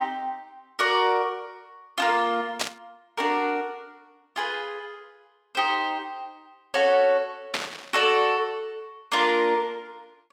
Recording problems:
static burst; at 2.5 s and at 7.5 s; peak +3 dB vs average level

